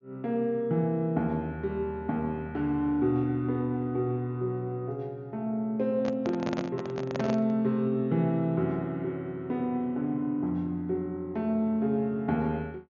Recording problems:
treble missing; nothing above 6.7 kHz
handling noise; from 6 to 7.5 s; peak -1 dB vs average level

